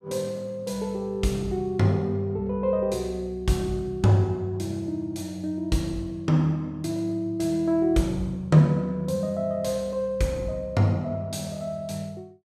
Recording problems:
none

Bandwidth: 15 kHz